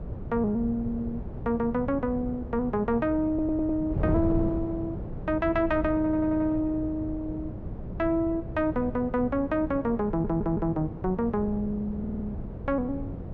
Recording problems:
electrical hum; 60 Hz, harmonics up to 540 Hz, SNR 20 dB
wind noise; below 220 Hz, SNR 8 dB
stutter; 4 times, first at 3.5 s

